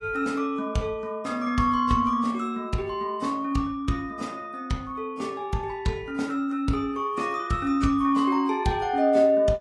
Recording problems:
codec artefacts; AAC, log-spectral distance 2 dB

